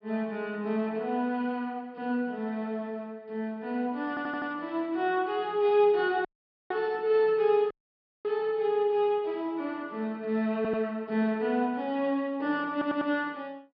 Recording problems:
treble missing; nothing above 5.5 kHz
audio stuttering; at 4 s, at 11 s and at 13 s
dropout; at 6.5 s and at 7.5 s for 0.5 s

